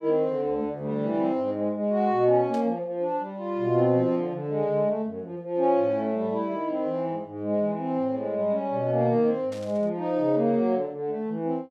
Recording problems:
static burst; at 2.5 s and at 9.5 s; peak -16 dB vs average level

